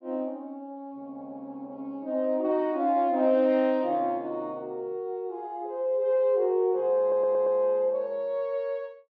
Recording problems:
stutter; at 7 s

